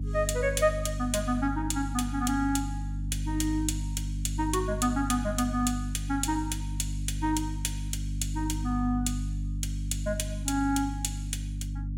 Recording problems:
hum; 50 Hz, harmonics up to 300 Hz, SNR 4 dB

